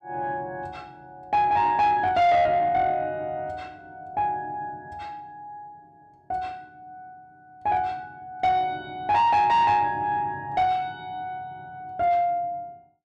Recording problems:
distorted audio; soft clipping, signal-to-distortion ratio 10 dB

